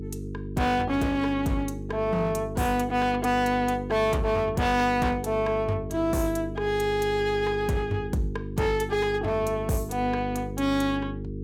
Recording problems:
distortion; hard clipping, signal-to-distortion ratio 10 dB
hum; 50 Hz, harmonics up to 450 Hz, SNR 9 dB

